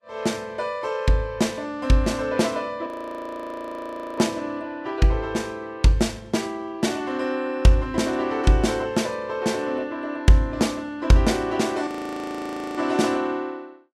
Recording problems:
lossy codec; Vorbis, log-spectral distance 2 dB, nothing above 12.7 kHz
audio freezing; at 3 s for 1.5 s and at 12 s for 1 s

